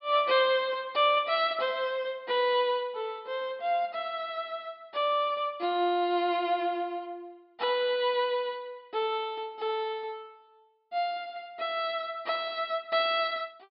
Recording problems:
treble missing; nothing above 5.5 kHz

